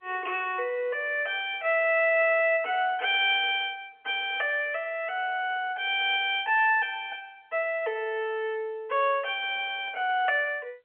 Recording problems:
telephone audio; 320 Hz to 3.2 kHz, G.711

